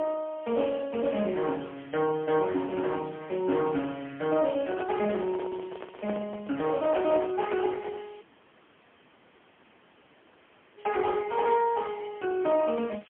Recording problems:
phone line; 150 Hz to 3.3 kHz, AMR-NB, then MP3
background hiss; SNR 27 dB
handling noise; from 4.5 to 8 s; peak 0 dB vs average level
audio cutting out; at 8 s for 2.5 s

